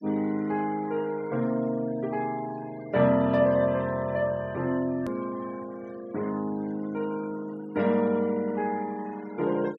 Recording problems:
denoising artefacts; signal-to-artefact ratio 22 dB
edit click; at 5 s

